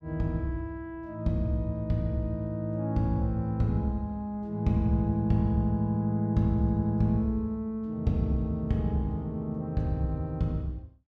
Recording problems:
none

